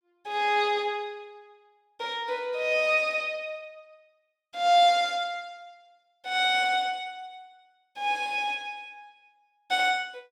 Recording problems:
none

